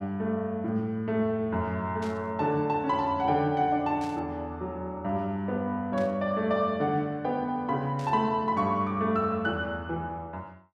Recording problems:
static burst; 4 times, first at 2 s; peak -13 dB vs average level

